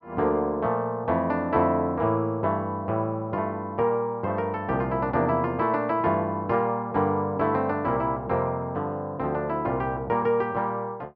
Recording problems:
none

